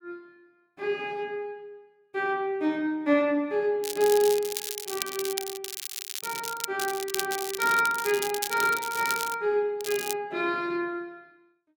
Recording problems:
crackling; from 4 to 6.5 s, from 7 to 9.5 s and at 10 s; loose cable, SNR 6 dB

